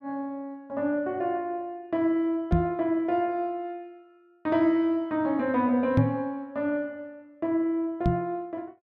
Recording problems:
knock on the microphone; at 2.5 s, at 6 s and at 8 s; peak +8 dB vs average level

